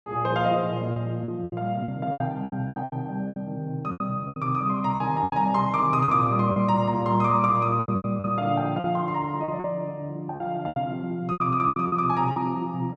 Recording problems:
packet loss; 13% of the sound replaced, filled with repeated pitch periods

